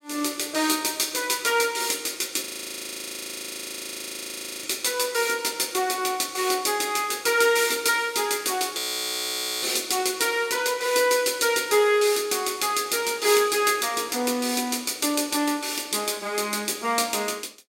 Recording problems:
audio freezing; at 2.5 s for 2 s and at 9 s for 1 s

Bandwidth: 16 kHz